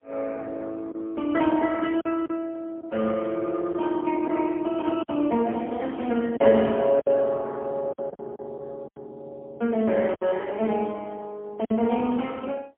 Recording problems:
phone line; 190 Hz to 3.1 kHz, AMR-NB, then MP3
lost packets; 5% of the sound replaced, filled with silence
burst of static; at 1.5 s; peak -16 dB vs average level

